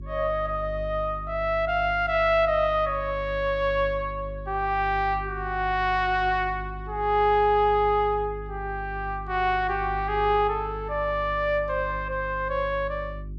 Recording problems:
electrical hum; 50 Hz, harmonics up to 400 Hz, SNR 13 dB

